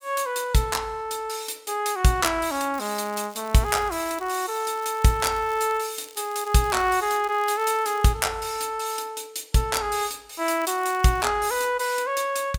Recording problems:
crackle; from 2.5 to 8 s and at 11 s; loose cable, SNR 22 dB

